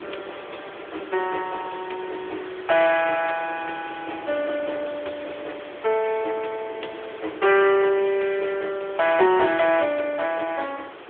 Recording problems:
phone line; 300 Hz to 3 kHz, AMR-NB
background hiss; SNR 18 dB
wind noise; below 540 Hz, SNR 20 dB

